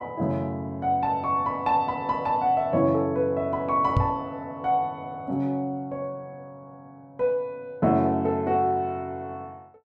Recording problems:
microphone thump; at 4 s; peak +6 dB vs average level

